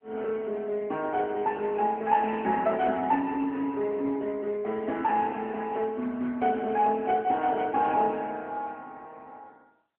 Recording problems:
telephone audio; 220 Hz to 2.6 kHz, AMR-NB

